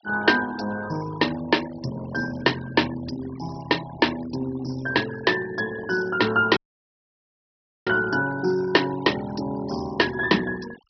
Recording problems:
treble missing; nothing above 5.5 kHz
denoising artefacts; signal-to-artefact ratio 17 dB
dropout; at 6.5 s for 1.5 s

